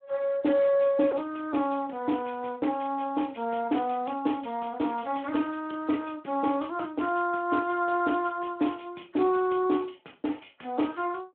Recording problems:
phone line; 240 Hz to 3.4 kHz, Speex

